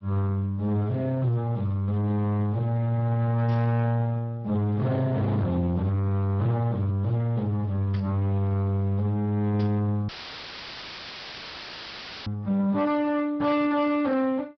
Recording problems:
treble missing; nothing above 5.5 kHz
lossy compression; Speex, log-spectral distance 2 dB
distorted audio; soft clipping, signal-to-distortion ratio 8 dB
static burst; at 3.5 s, at 8 s and at 9.5 s; peak -12 dB vs average level
audio cutting out; at 10 s for 2 s; filled with static

